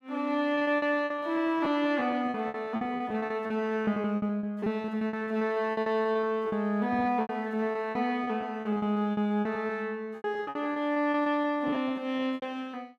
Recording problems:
packet loss; 19% of the sound replaced, filled with repeated pitch periods

